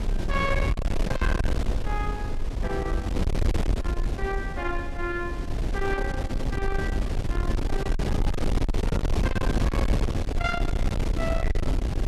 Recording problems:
distorted audio; soft clipping, signal-to-distortion ratio 11 dB
wind noise; below 130 Hz, SNR -4 dB

